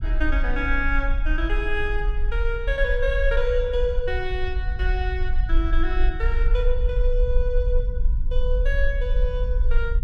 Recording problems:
low-frequency rumble; below 48 Hz, SNR -2 dB

